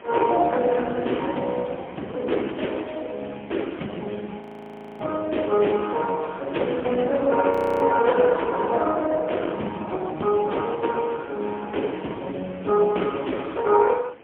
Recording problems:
phone line; 280 Hz to 3.3 kHz, AMR-NB, then MP3
wind on the microphone; below 1.7 kHz, SNR 22 dB
frozen audio; at 4.5 s for 0.5 s and at 7.5 s

